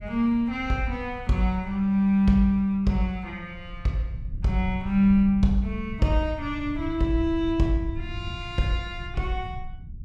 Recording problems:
low-frequency rumble; below 98 Hz, SNR 13 dB

